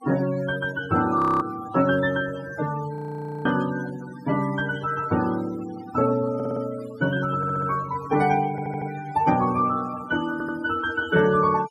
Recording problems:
noise reduction artefacts; signal-to-artefact ratio 15 dB
frozen audio; at 1 s and at 3 s for 0.5 s
stutter; 4 times, first at 6.5 s

